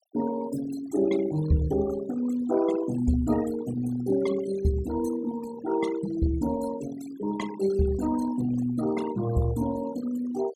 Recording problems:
noise reduction artefacts; signal-to-artefact ratio 14 dB

